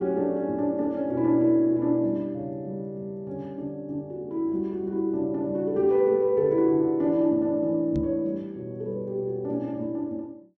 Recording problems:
microphone bump; at 8 s; peak -1 dB vs average level

